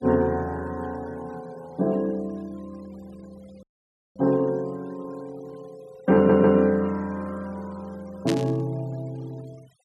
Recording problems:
noise reduction artefacts; signal-to-artefact ratio 28 dB
dropout; at 3.5 s for 0.5 s
audio stuttering; at 6 s
burst of static; at 8.5 s; peak -2 dB vs average level

